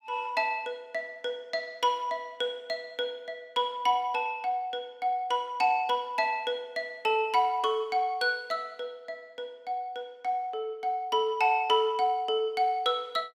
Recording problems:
none

